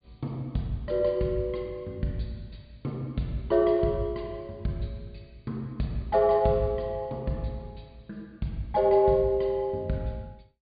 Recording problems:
low-pass filter; nothing above 4.7 kHz

